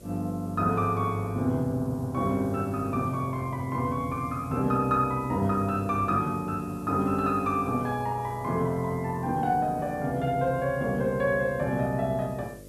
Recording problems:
hum; 50 Hz, harmonics up to 600 Hz, SNR 21 dB
hiss; slope +2 dB per octave, SNR 27 dB

